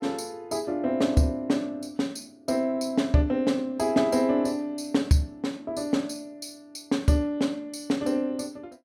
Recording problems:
none

